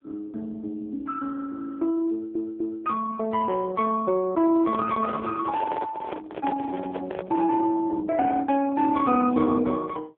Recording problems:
phone line; 220 Hz to 2.2 kHz, AMR-NB
stutter; at 2 s
handling noise; from 4.5 to 7.5 s; peak -3 dB vs average level

